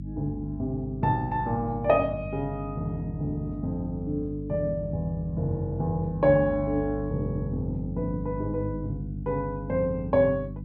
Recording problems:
hum; 50 Hz, harmonics up to 300 Hz, SNR 8 dB

